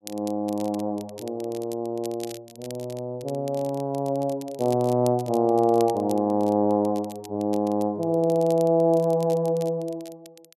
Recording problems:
crackle; vinyl, SNR 22 dB

